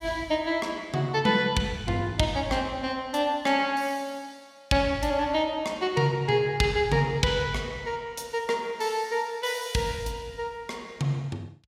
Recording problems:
none

